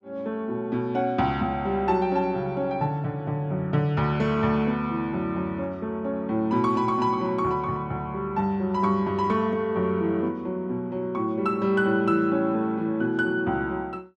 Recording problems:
none

